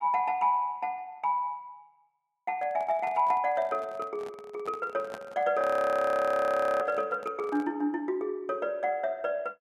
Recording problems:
handling noise; from 2.5 to 8 s; peak -8 dB vs average level
audio freezing; at 5.5 s for 1 s

